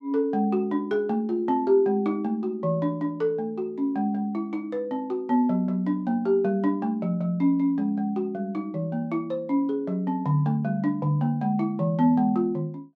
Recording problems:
none

